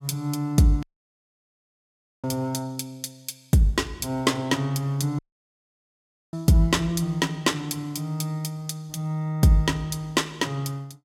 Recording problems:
dropout; at 1 s for 1.5 s and at 5 s for 1 s

